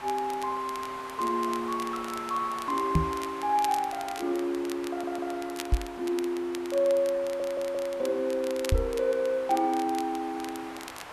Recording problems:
background hiss; SNR 13 dB
crackling; vinyl, SNR 15 dB
knock on the microphone; at 3 s, at 5.5 s and at 8.5 s; peak +8 dB vs average level
audio stuttering; at 5 s and at 7 s

